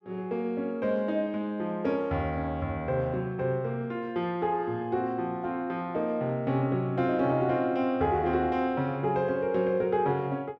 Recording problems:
none

